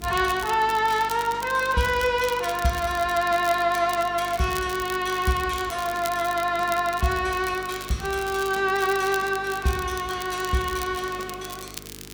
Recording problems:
electrical hum; 50 Hz, harmonics up to 450 Hz, SNR 21 dB
hiss; slope -3 dB per octave, SNR 28 dB
crackle; vinyl, SNR 15 dB

